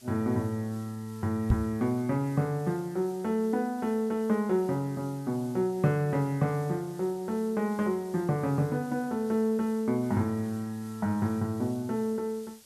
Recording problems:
background hiss; slope +1 dB per octave, SNR 23 dB
microphone bump; at 1.5 s; peak +7 dB vs average level

